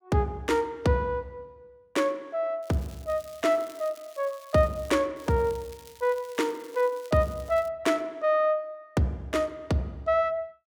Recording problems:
crackling; from 2.5 to 5 s and from 5 to 7.5 s; loose cable, SNR 24 dB

